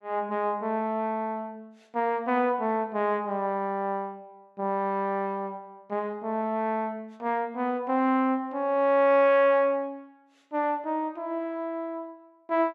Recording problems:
none

